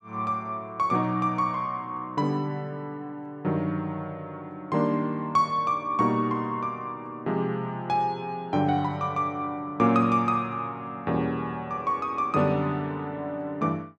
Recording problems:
none

